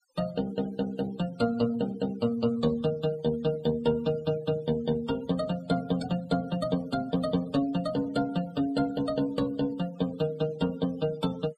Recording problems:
noise reduction artefacts; signal-to-artefact ratio 20 dB

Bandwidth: 15 kHz